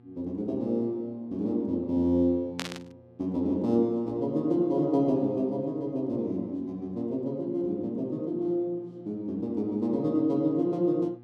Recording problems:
electrical hum; 60 Hz, harmonics up to 1.2 kHz, SNR 26 dB
static burst; at 2.5 s; peak -1 dB vs average level

